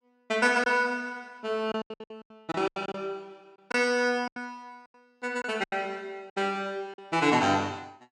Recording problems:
packet loss; 11% of the sound replaced, filled with silence

